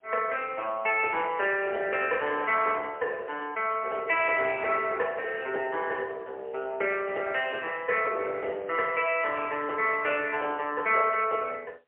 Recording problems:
phone line; 340 Hz to 3.6 kHz, AMR-NB, then MP3

